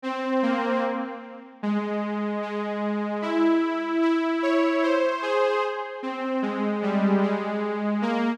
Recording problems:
none

